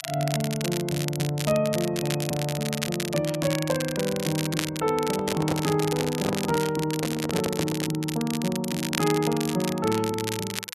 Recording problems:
crackling; vinyl, SNR 6 dB
microphone handling noise; from 5 to 8 s; peak +1 dB vs average level

